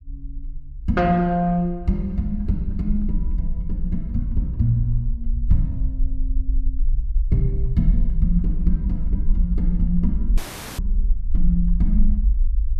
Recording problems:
rumble; below 48 Hz, SNR 2 dB
audio cutting out; at 10 s

